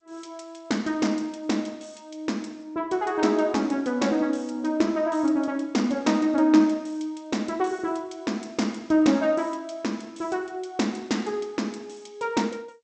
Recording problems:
lossy compression; G.722, log-spectral distance 4 dB, nothing above 8 kHz

